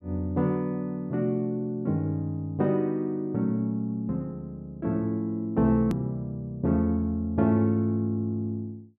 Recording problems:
hard cut with a click; at 6 s

